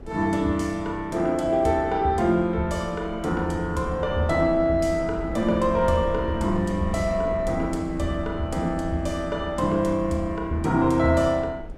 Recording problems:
wind on the microphone; below 290 Hz, SNR 13 dB

